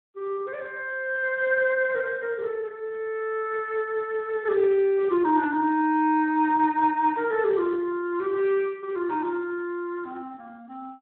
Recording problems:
telephone audio; 260 Hz to 3.1 kHz, Speex

